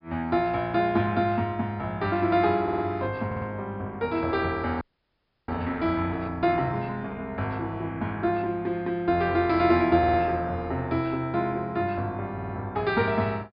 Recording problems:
low-pass filter; nothing above 5.5 kHz
audio stuttering; 4 times, first at 2.5 s
audio freezing; at 5 s for 0.5 s

